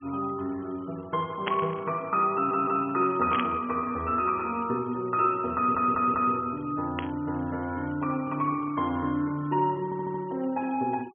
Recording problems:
treble cut off; nothing above 3.3 kHz
noise reduction artefacts; signal-to-artefact ratio 27 dB
static burst; at 1.5 s, at 3.5 s and at 7 s; peak +2 dB vs average level
audio stuttering; at 2.5 s, at 5.5 s and at 10 s

